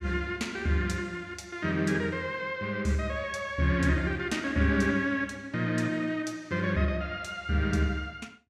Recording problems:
none

